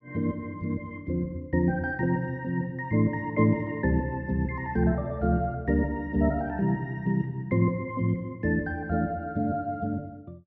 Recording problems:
none

